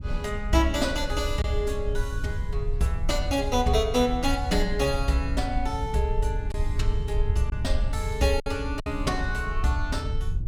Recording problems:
low-frequency rumble; below 74 Hz, SNR 4 dB
lost packets; 1.8% of the sound replaced, filled with silence

